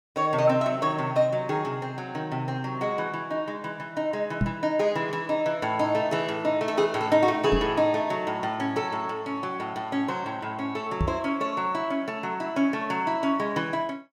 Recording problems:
knock on the microphone; at 4.5 s, at 7.5 s and at 11 s; peak +4 dB vs average level

